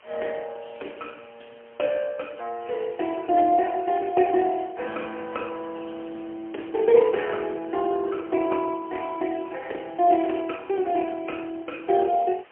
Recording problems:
telephone audio; 260 Hz to 3.1 kHz, AMR-NB, then MP3
hiss; SNR 27 dB

